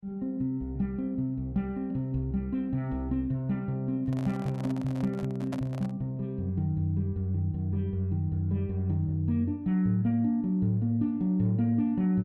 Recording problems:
handling noise; from 4 to 6 s; peak -5 dB vs average level

